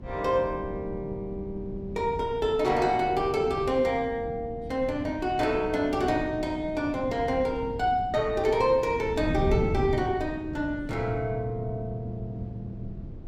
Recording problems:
wind on the microphone; below 220 Hz, SNR 10 dB

